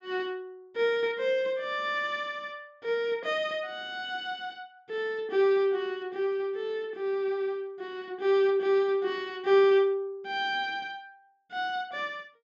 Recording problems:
treble missing; nothing above 8 kHz

